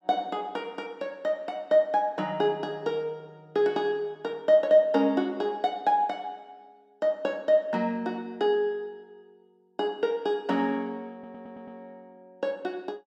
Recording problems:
stutter; at 11 s

